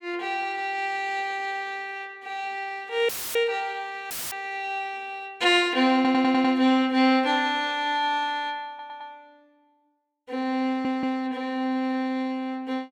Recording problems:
dropout; at 3 s and at 4 s; filled with static
stutter; at 6 s, at 8.5 s and at 11 s

